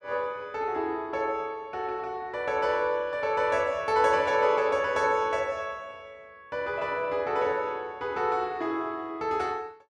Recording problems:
none

